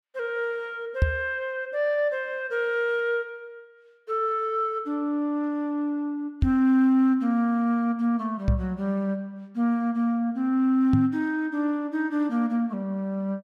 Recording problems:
microphone thump; 4 times, first at 1 s; peak +7 dB vs average level

